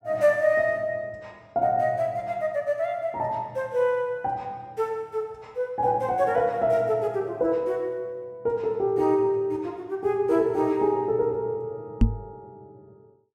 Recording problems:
knock on the microphone; at 12 s; peak +9 dB vs average level

